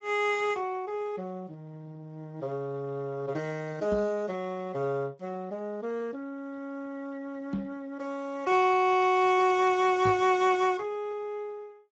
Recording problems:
lossy codec; Speex, log-spectral distance 2 dB, nothing above 7.3 kHz
microphone thump; at 4 s, at 7.5 s and at 10 s; peak +1 dB vs average level

